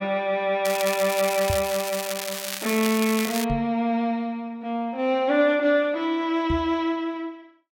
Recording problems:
crackling; from 0.5 to 3.5 s; loose cable, SNR 7 dB
microphone bump; at 1.5 s, at 3.5 s and at 6.5 s; peak 0 dB vs average level

